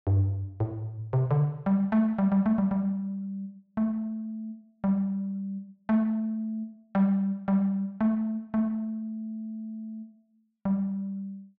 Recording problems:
none

